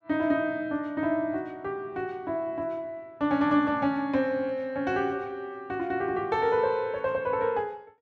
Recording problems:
none

